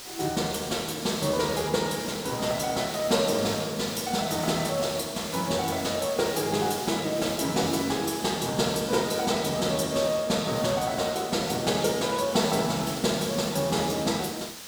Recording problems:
hiss; slope 0 dB per octave, SNR 12 dB

